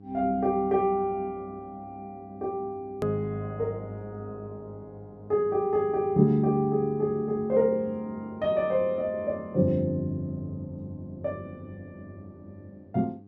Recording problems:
hum; 50 Hz, harmonics up to 800 Hz, SNR 22 dB
hard cut with a click; at 3 s

